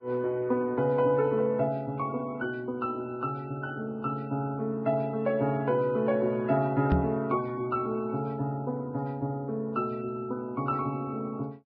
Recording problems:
codec artefacts; Vorbis, log-spectral distance 2 dB
knock on the microphone; at 7 s; peak +6 dB vs average level

